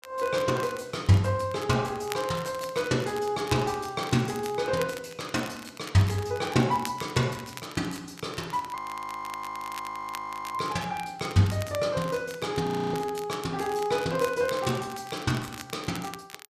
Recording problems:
crackling; vinyl, SNR 16 dB
frozen audio; at 9 s for 2 s and at 13 s

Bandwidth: 14.5 kHz